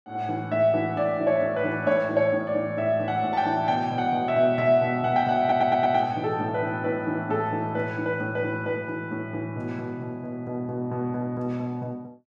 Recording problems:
stutter; at 5.5 s

